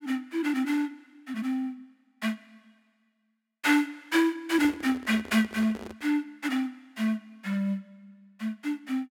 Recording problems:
handling noise; from 4.5 to 6 s; peak -8 dB vs average level

